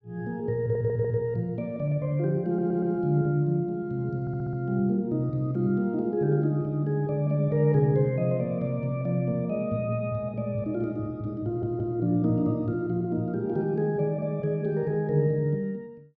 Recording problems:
audio stuttering; 4 times, first at 0.5 s

